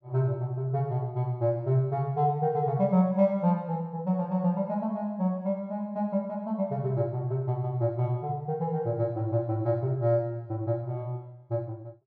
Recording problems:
none

